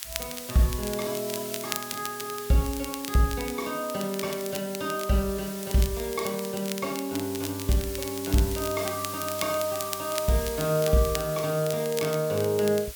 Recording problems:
hiss; slope +3 dB per octave, SNR 9 dB
crackling; vinyl, SNR 10 dB

